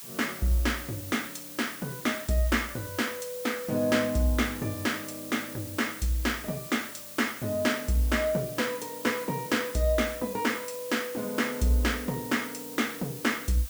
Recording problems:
hiss; SNR 11 dB

